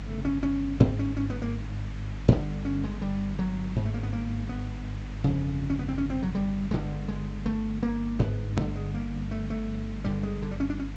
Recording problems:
low-pass filter; nothing above 8 kHz
electrical hum; 50 Hz, harmonics up to 300 Hz, SNR 8 dB
background hiss; SNR 18 dB
edit click; at 8.5 s

